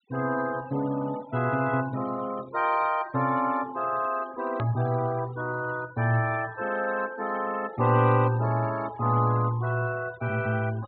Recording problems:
treble missing; nothing above 4.2 kHz
denoising artefacts; signal-to-artefact ratio 19 dB
click at an edit; at 4.5 s

